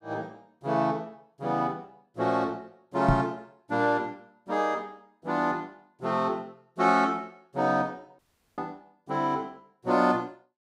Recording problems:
knock on the microphone; at 3 s; peak +6 dB vs average level
audio cutting out; at 8 s

